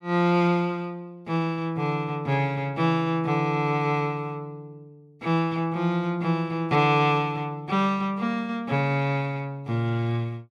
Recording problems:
none

